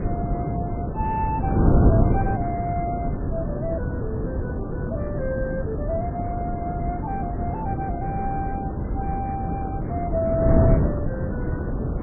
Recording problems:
lossy compression; MP3, log-spectral distance 2 dB, nothing above 2.4 kHz
wind noise; below 270 Hz, SNR -5 dB

